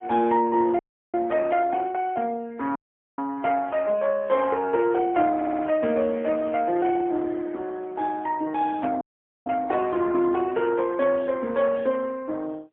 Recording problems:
phone line; 240 Hz to 3.4 kHz, AMR-NB, then MP3
audio cutting out; at 1 s, at 3 s and at 9 s
audio stuttering; at 5.5 s

